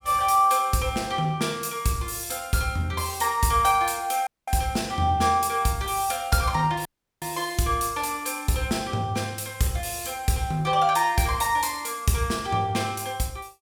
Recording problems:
audio cutting out; at 4.5 s and at 7 s

